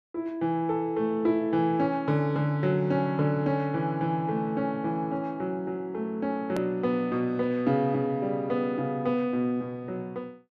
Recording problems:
edit click; at 6.5 s

